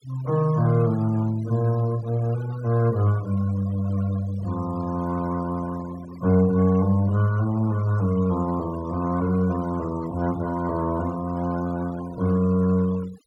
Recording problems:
noise reduction artefacts; signal-to-artefact ratio 19 dB

